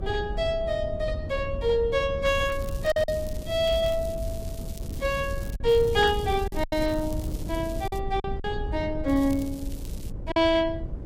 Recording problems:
lossy compression; Vorbis, log-spectral distance 2 dB, nothing above 15.1 kHz
hum; 50 Hz, harmonics up to 600 Hz, SNR 22 dB
wind on the microphone; below 110 Hz, SNR 9 dB
lost packets; 4% of the sound replaced, filled with silence
crackle; from 2.5 to 5.5 s, from 5.5 to 8 s and from 9 to 10 s; loose cable, SNR 20 dB

